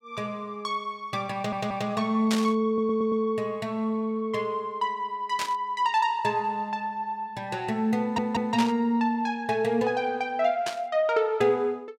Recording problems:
audio stuttering; at 1.5 s, at 2.5 s and at 8 s
burst of static; 4 times, first at 2.5 s; peak 0 dB vs average level

